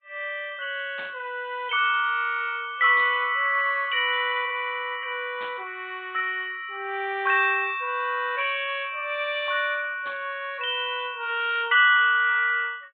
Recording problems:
low-pass filter; nothing above 4 kHz
codec artefacts; Vorbis, log-spectral distance 2 dB
static burst; 4 times, first at 1 s; peak -13 dB vs average level

